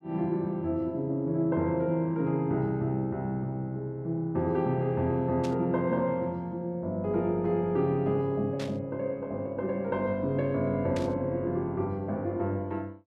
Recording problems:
burst of static; at 5.5 s, at 8.5 s and at 11 s; peak -8 dB vs average level

